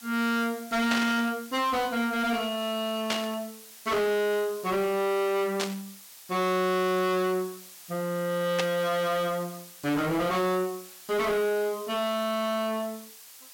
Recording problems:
distortion; soft clipping, signal-to-distortion ratio 7 dB
background hiss; slope +2 dB per octave, SNR 17 dB
static burst; 4 times, first at 1 s; peak +3 dB vs average level

